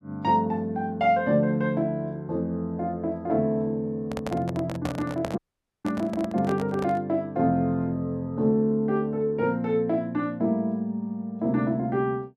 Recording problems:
handling noise; from 4 to 7 s; peak -2 dB vs average level
audio cutting out; at 5.5 s

